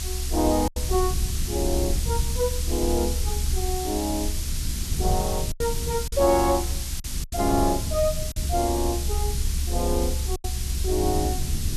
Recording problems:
hiss; slope +4 dB per octave, SNR 5 dB
rumble; below 70 Hz, SNR 2 dB
lost packets; 3% of the sound replaced, filled with silence

